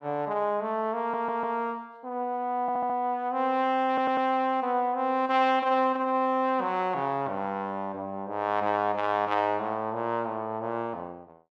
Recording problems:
stutter; at 1 s, at 2.5 s and at 4 s

